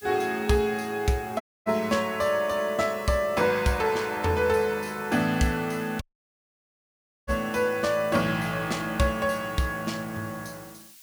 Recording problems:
hiss; SNR 21 dB
audio cutting out; at 1.5 s and at 6 s for 1.5 s

